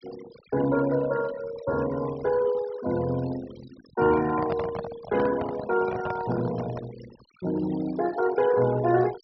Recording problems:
treble missing; nothing above 5.6 kHz
noise reduction artefacts; signal-to-artefact ratio 17 dB
microphone handling noise; from 4 to 7 s; peak -2 dB vs average level

